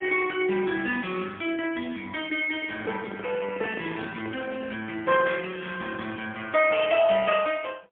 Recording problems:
telephone audio; 190 Hz to 3.2 kHz, AMR-NB, then MP3
microphone handling noise; from 2.5 to 4.5 s; peak -4 dB vs average level

